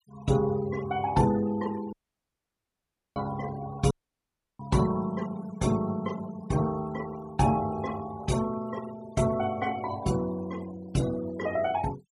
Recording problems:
noise reduction artefacts; signal-to-artefact ratio 18 dB
dropout; at 2 s for 1 s and at 4 s for 0.5 s

